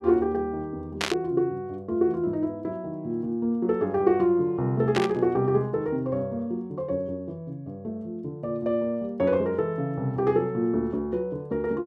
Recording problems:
burst of static; at 1 s and at 5 s; peak +4 dB vs average level

